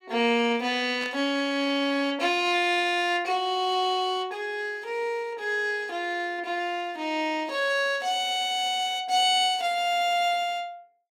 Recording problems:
static burst; at 1 s; peak -10 dB vs average level

